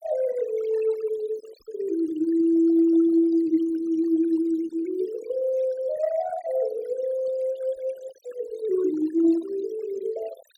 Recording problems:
denoising artefacts; signal-to-artefact ratio 21 dB

